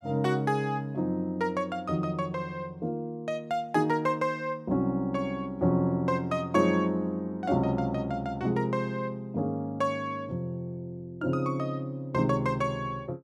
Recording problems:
none

